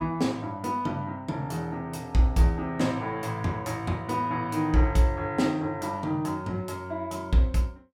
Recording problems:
none

